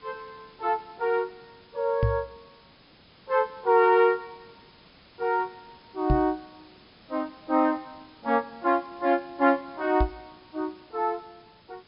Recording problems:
treble missing; nothing above 5.2 kHz
background hiss; slope -2 dB per octave, SNR 27 dB
knock on the microphone; at 2 s, at 6 s and at 10 s; peak +5 dB vs average level

